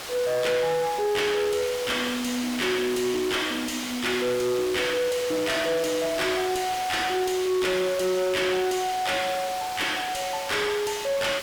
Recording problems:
distortion; soft clipping, signal-to-distortion ratio 7 dB
background hiss; slope -2 dB per octave, SNR 9 dB

